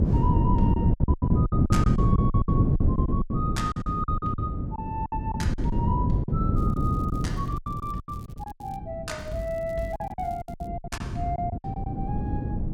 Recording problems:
wind noise; below 200 Hz, SNR -7 dB
packet loss; 15% of the sound replaced, filled with silence
crackle; from 6.5 to 9 s and from 9 to 11 s; loose cable, SNR 25 dB

